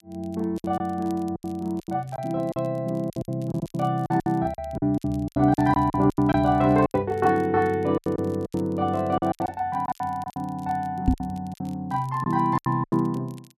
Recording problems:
crackle; vinyl, SNR 30 dB
packet loss; 15% of the sound replaced, filled with silence
microphone thump; at 11 s; peak +7 dB vs average level

